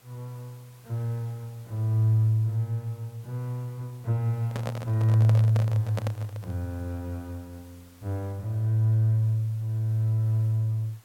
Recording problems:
hiss; slope -2 dB per octave, SNR 29 dB
handling noise; from 4.5 to 6.5 s; peak -3 dB vs average level

